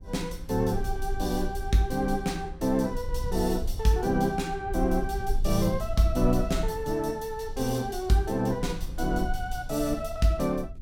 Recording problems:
low-frequency rumble; below 56 Hz, SNR 9 dB

